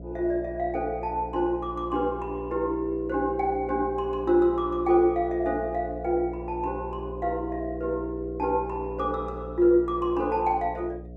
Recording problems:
hum; 60 Hz, harmonics up to 720 Hz, SNR 14 dB

